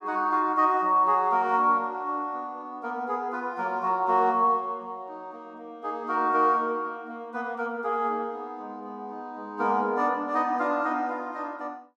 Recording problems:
none

